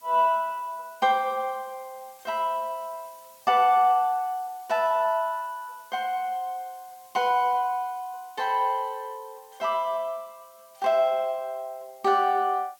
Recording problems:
background hiss; slope +1 dB per octave, SNR 27 dB

